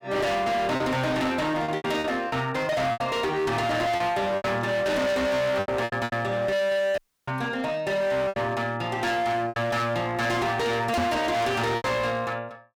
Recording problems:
distorted audio; hard clipping, signal-to-distortion ratio 6 dB
lost packets; 8% of the sound replaced, filled with repeated pitch periods
dropout; at 7 s
knock on the microphone; at 11 s; peak +6 dB vs average level

